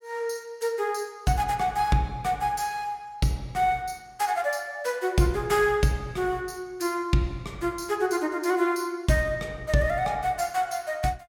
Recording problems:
none

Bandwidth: 17.5 kHz